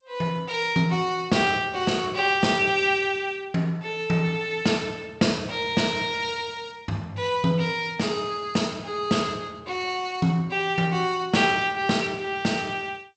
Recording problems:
lossy codec; G.722, log-spectral distance 3 dB, nothing above 8 kHz

